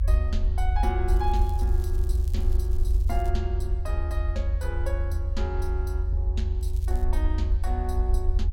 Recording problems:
rumble; below 76 Hz, SNR -8 dB
crackle; from 1 to 3.5 s and at 6.5 s; loose cable, SNR 18 dB

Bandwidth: 16.5 kHz